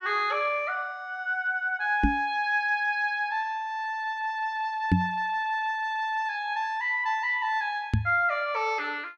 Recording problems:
microphone thump; at 2 s, at 5 s and at 8 s; peak +8 dB vs average level

